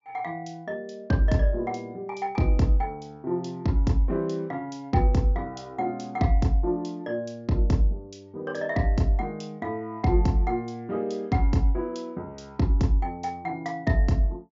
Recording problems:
treble cut off; nothing above 7.2 kHz

